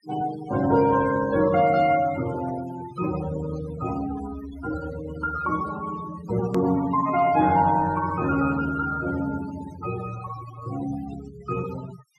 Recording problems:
noise reduction artefacts; signal-to-artefact ratio 12 dB
edit click; at 6.5 s

